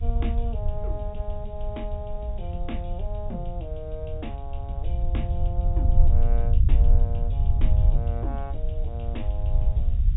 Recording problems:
treble missing; nothing above 4 kHz
background hiss; SNR 27 dB
rumble; below 70 Hz, SNR -10 dB

